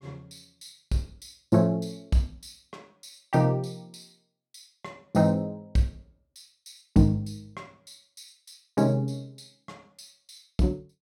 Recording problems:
none

